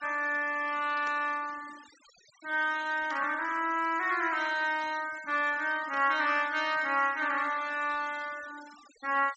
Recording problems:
low-pass filter; nothing above 8 kHz
noise reduction artefacts; signal-to-artefact ratio 20 dB
burst of static; at 1 s, at 3 s and at 6 s; peak -15 dB vs average level

